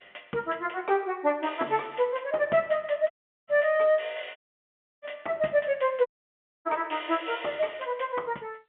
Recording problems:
phone line; 280 Hz to 3.4 kHz, G.711
audio cutting out; at 3 s, at 4.5 s for 0.5 s and at 6 s for 0.5 s

